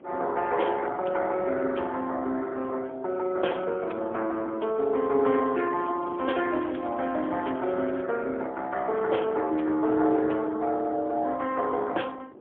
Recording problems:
phone line; 280 Hz to 3.4 kHz, AMR-NB, then MP3
wind on the microphone; below 520 Hz, SNR 22 dB
crackle; from 5.5 to 8 s; loose cable, SNR 27 dB

